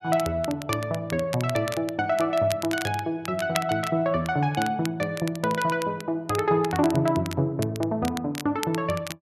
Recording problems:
crackling; vinyl, SNR 13 dB

